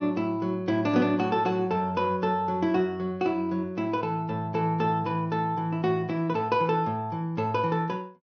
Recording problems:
treble missing; nothing above 6.3 kHz

